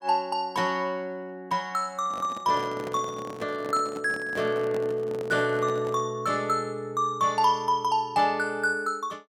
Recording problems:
handling noise; from 2 to 6 s; peak -8 dB vs average level

